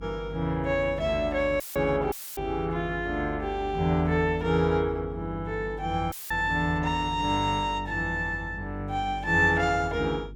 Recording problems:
hum; 50 Hz, harmonics up to 400 Hz, SNR 14 dB
dropout; at 1.5 s, at 2 s and at 6 s; filled with static

